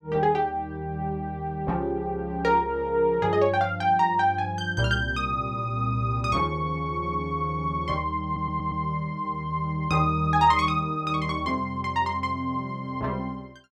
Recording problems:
audio stuttering; at 8.5 s

